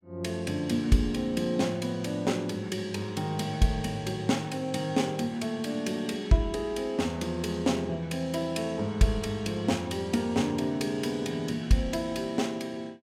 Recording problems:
none

